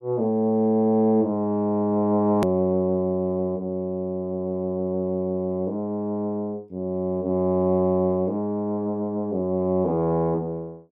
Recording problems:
edit click; at 2.5 s

